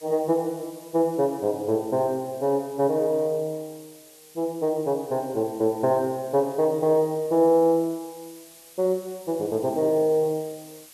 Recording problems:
background hiss; slope +1 dB per octave, SNR 23 dB

